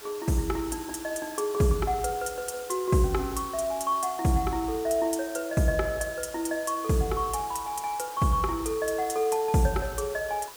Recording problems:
hiss; slope -1 dB per octave, SNR 15 dB

